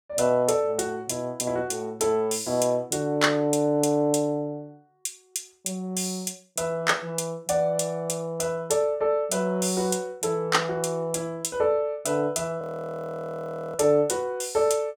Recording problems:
audio freezing; at 13 s for 1 s

